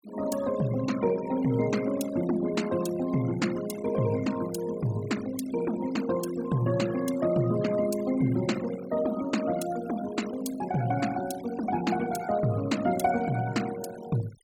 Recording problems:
noise reduction artefacts; signal-to-artefact ratio 15 dB

